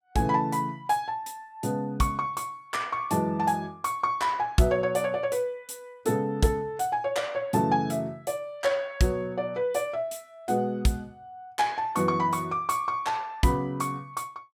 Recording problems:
none

